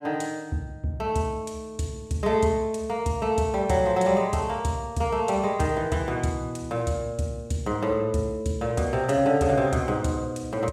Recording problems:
none

